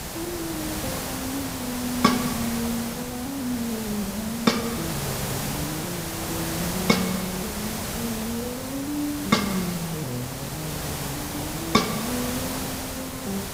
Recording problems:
hiss; slope -3 dB per octave, SNR 1 dB

